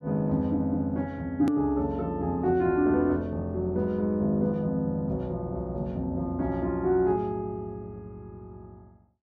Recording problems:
hard cut with a click; at 1.5 s

